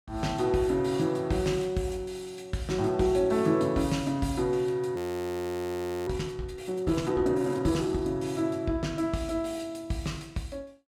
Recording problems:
frozen audio; at 5 s for 1 s

